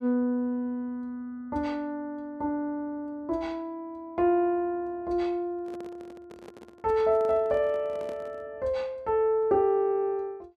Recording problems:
handling noise; from 5.5 to 8.5 s; peak -11 dB vs average level

